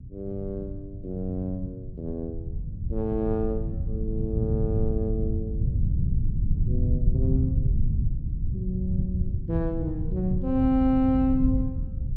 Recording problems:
low-frequency rumble; below 120 Hz, SNR 0 dB

